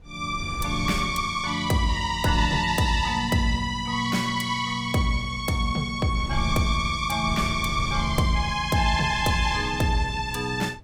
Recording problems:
wind noise; below 110 Hz, SNR 12 dB

